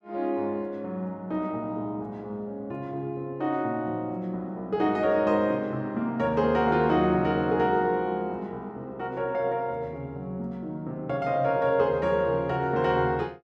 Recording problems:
none

